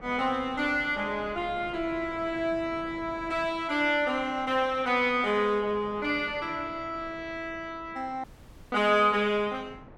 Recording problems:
wind noise; below 600 Hz, SNR 21 dB
dropout; at 8 s

